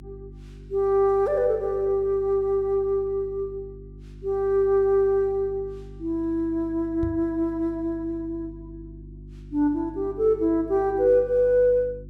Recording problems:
hum; 50 Hz, harmonics up to 350 Hz, SNR 20 dB
knock on the microphone; at 7 s; peak -4 dB vs average level

